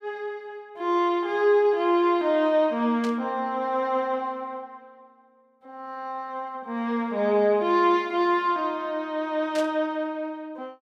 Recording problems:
static burst; at 3 s and at 9.5 s; peak -9 dB vs average level

